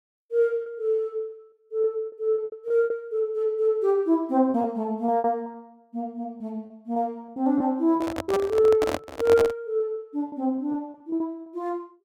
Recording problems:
packet loss; 11% of the sound replaced, filled with repeated pitch periods
handling noise; from 8 to 9.5 s; peak +1 dB vs average level

